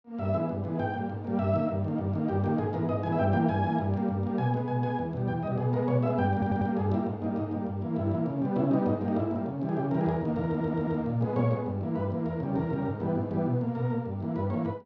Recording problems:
audio stuttering; at 6.5 s and at 10 s

